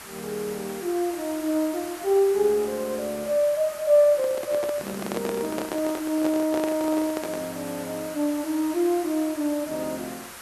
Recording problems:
hiss; SNR 13 dB
handling noise; from 4 to 7.5 s; peak -1 dB vs average level

